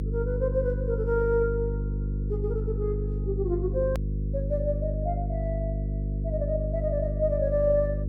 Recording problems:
hum; 50 Hz, harmonics up to 500 Hz, SNR 1 dB
edit click; at 4 s

